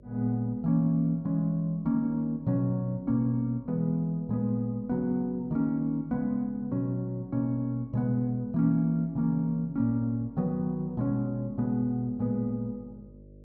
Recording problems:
mains hum; 50 Hz, harmonics up to 600 Hz, SNR 25 dB

